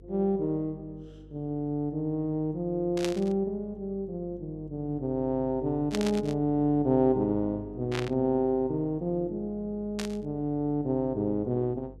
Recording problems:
electrical hum; 50 Hz, harmonics up to 500 Hz, SNR 20 dB
static burst; 4 times, first at 3 s; peak -1 dB vs average level

